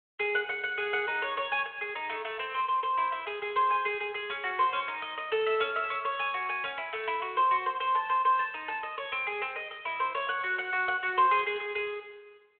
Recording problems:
phone line; 320 Hz to 3.6 kHz, G.726

